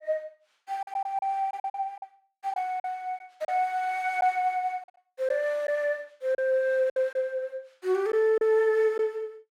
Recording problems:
packet loss; 7% of the sound replaced, filled with silence

